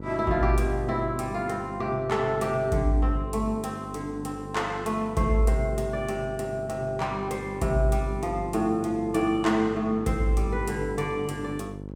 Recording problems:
hum; 50 Hz, harmonics up to 950 Hz, SNR 12 dB

